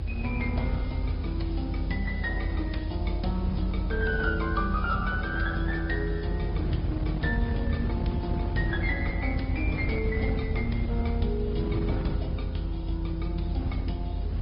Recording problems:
treble cut off; nothing above 5.2 kHz
lossy codec; Vorbis, then Opus, log-spectral distance 2 dB
background hiss; SNR 28 dB
rumble; below 80 Hz, strongest tone 48 Hz, SNR 0 dB
wind noise; below 220 Hz, SNR 3 dB

